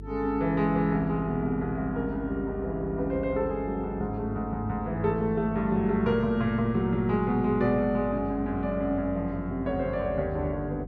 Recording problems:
hum; 50 Hz, harmonics up to 450 Hz, SNR 13 dB

